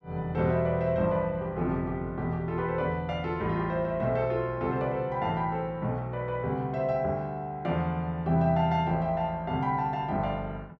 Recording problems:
none

